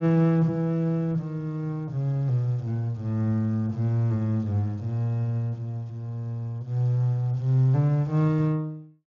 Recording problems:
treble missing; nothing above 6.9 kHz

